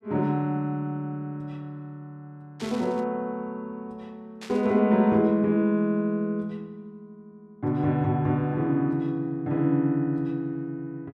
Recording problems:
static burst; at 2.5 s and at 4.5 s; peak -11 dB vs average level

